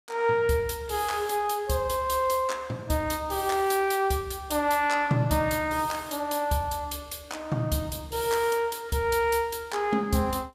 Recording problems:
none

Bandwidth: 15.5 kHz